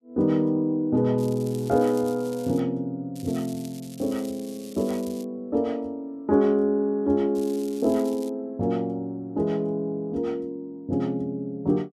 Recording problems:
crackle; from 1 to 2.5 s, from 3 to 5 s and at 7.5 s; loose cable, SNR 20 dB

